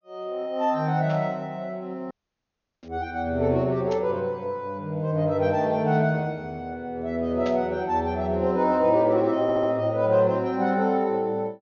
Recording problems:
treble missing; nothing above 6.7 kHz
static burst; 4 times, first at 1 s; peak -11 dB vs average level
dropout; at 2 s for 0.5 s
stutter; at 9.5 s

